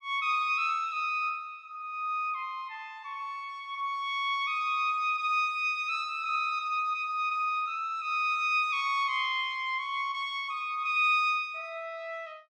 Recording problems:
none

